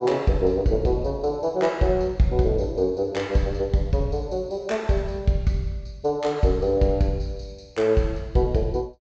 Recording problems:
low-pass filter; nothing above 8 kHz

